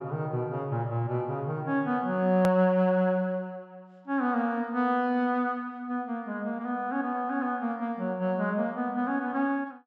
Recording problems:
hard cut with a click; at 2.5 s

